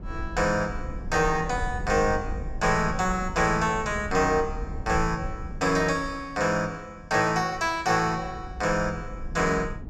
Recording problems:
rumble; below 98 Hz, SNR 11 dB

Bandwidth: 12.5 kHz